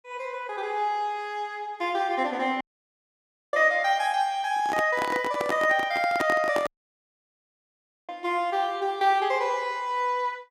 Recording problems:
audio cutting out; at 2.5 s for 1 s and at 6.5 s for 1.5 s
handling noise; from 4.5 to 6.5 s; peak +1 dB vs average level

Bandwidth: 15.5 kHz